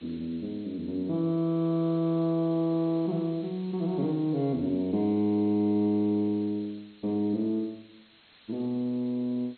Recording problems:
lossy compression; MP2, log-spectral distance 12 dB, nothing above 3.5 kHz
background hiss; SNR 28 dB

